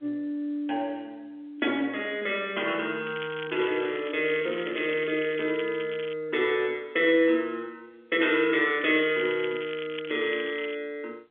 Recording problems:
phone line; 320 Hz to 3.4 kHz, G.711
crackling; from 3 to 6 s and from 9 to 11 s; loose cable, SNR 14 dB

